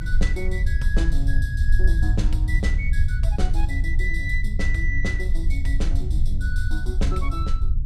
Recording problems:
rumble; below 64 Hz, strongest tone 20 Hz, SNR -6 dB

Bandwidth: 15.5 kHz